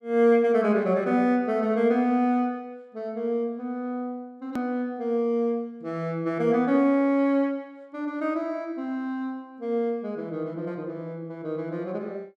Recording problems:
click at an edit; at 4.5 s

